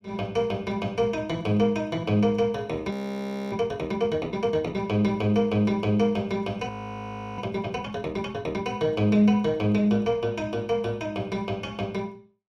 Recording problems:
audio freezing; at 3 s for 0.5 s and at 6.5 s for 0.5 s

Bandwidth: 14.5 kHz